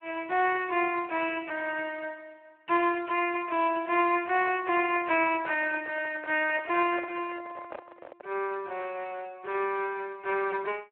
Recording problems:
telephone audio; 320 Hz to 2.8 kHz, Speex
microphone handling noise; from 4.5 to 8.5 s; peak -6 dB vs average level

